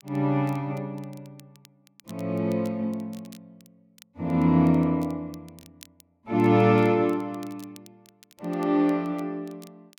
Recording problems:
crackle; vinyl, SNR 29 dB

